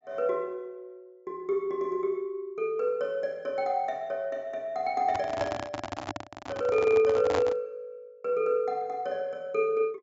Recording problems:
treble cut off; nothing above 8 kHz
microphone handling noise; from 5 to 7.5 s; peak +2 dB vs average level

